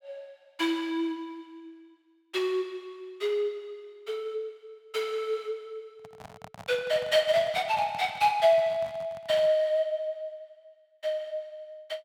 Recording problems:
handling noise; from 6 to 9.5 s; peak -11 dB vs average level

